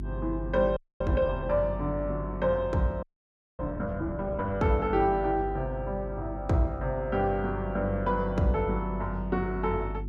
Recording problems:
hum; 50 Hz, harmonics up to 400 Hz, SNR 9 dB
audio freezing; at 1 s and at 3 s for 0.5 s

